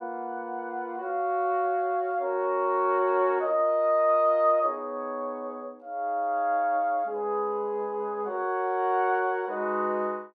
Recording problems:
none

